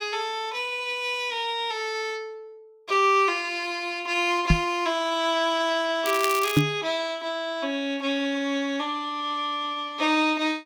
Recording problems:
microphone bump; at 4.5 s and at 6.5 s; peak +9 dB vs average level
crackle; at 6 s; loose cable, SNR 8 dB

